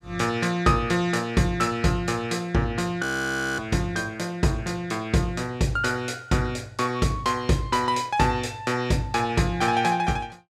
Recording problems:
frozen audio; at 3 s for 0.5 s

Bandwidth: 15 kHz